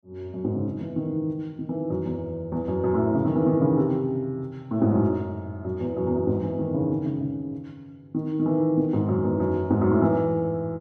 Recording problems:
none

